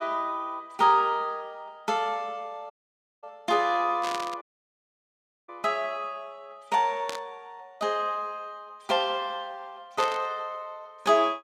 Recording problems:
audio cutting out; at 2.5 s for 0.5 s and at 4.5 s for 1 s
static burst; at 4 s, at 7 s and at 10 s; peak -3 dB vs average level

